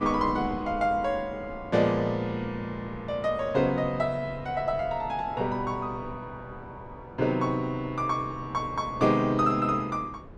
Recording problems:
wind on the microphone; below 440 Hz, SNR 17 dB

